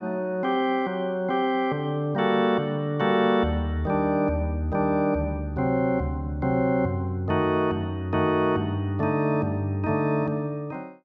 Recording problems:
none

